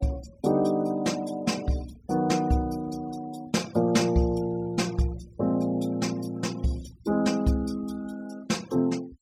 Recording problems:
noise reduction artefacts; signal-to-artefact ratio 21 dB

